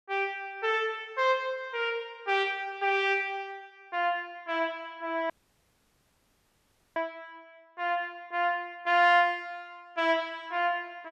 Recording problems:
audio cutting out; at 5.5 s for 1.5 s

